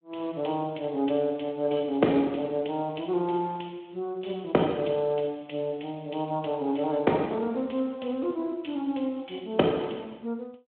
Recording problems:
telephone audio; 190 Hz to 3.6 kHz, Speex

